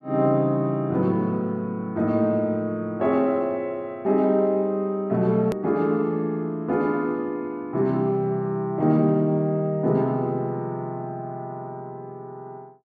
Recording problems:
edit click; at 5.5 s

